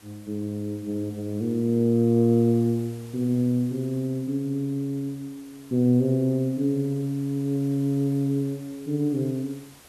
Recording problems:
hiss; slope -3 dB per octave, SNR 25 dB

